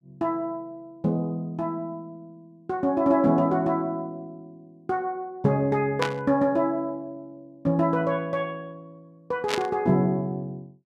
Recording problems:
static burst; at 6 s and at 9.5 s; peak +3 dB vs average level

